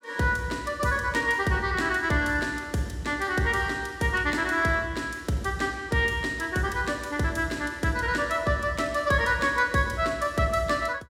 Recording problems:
none

